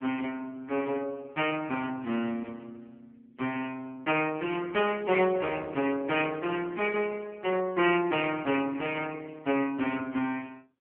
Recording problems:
telephone audio; 220 Hz to 3.3 kHz, AMR-NB

